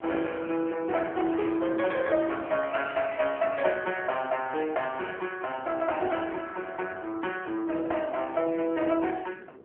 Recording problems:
phone line; 280 Hz to 3.3 kHz, AMR-NB
wind noise; below 450 Hz, SNR 19 dB

